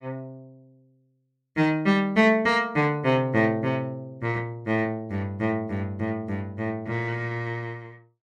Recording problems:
none

